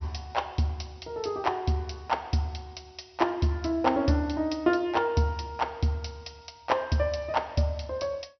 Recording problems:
treble cut off; nothing above 5.9 kHz

